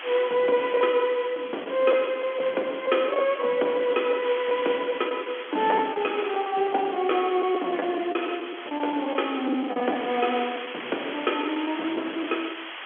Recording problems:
telephone audio; 220 Hz to 3.4 kHz, G.711
background hiss; SNR 12 dB
packet loss; 8% of the sound replaced, filled with the last packet

